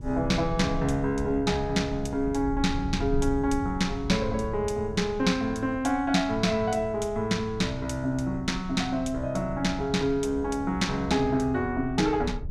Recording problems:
rumble; below 110 Hz, SNR 12 dB

